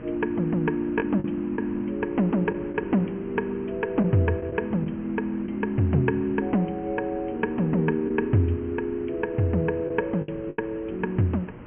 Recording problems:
treble missing; nothing above 3 kHz
electrical hum; 60 Hz, harmonics up to 1.7 kHz, SNR 23 dB
hiss; SNR 17 dB
lost packets; 3% of the sound replaced, filled with the last packet

